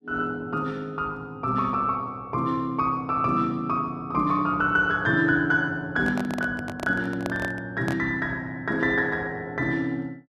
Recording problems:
handling noise; from 6 to 8 s; peak -2 dB vs average level

